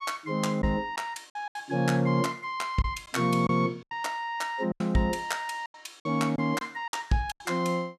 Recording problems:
packet loss; 8% of the sound replaced, filled with silence

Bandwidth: 14.5 kHz